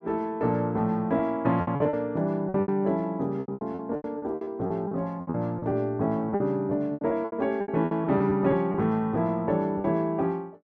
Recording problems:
lost packets; 13% of the sound replaced, filled with repeated pitch periods

